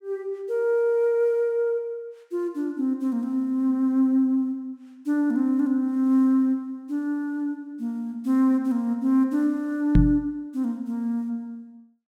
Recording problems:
microphone thump; at 10 s; peak +9 dB vs average level

